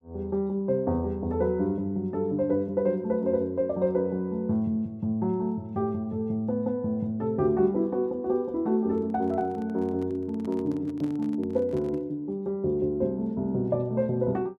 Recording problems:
handling noise; from 9 to 12 s; peak -9 dB vs average level

